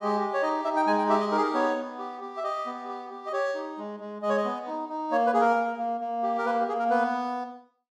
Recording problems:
none

